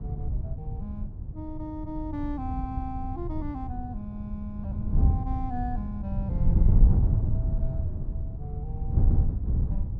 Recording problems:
wind noise; below 100 Hz, SNR -9 dB

